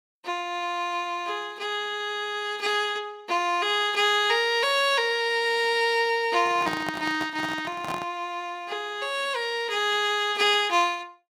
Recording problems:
handling noise; from 6.5 to 8 s; peak -3 dB vs average level

